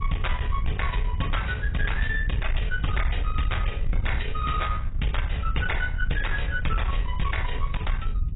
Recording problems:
lossy compression; AAC, log-spectral distance 3 dB, nothing above 3.8 kHz
distortion; soft clipping, signal-to-distortion ratio 12 dB
wind noise; below 70 Hz, SNR 0 dB

